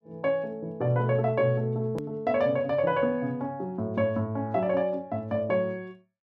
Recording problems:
hard cut with a click; at 2 s

